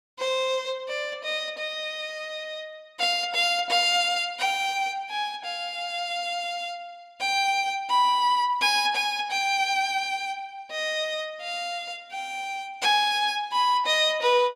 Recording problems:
none

